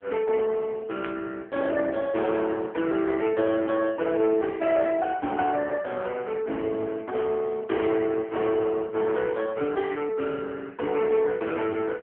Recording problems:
telephone audio; 220 Hz to 3.4 kHz, AMR-NB
static burst; at 1 s; peak -17 dB vs average level

